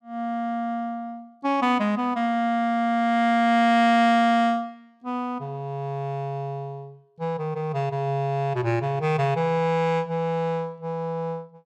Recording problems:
none

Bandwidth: 14.5 kHz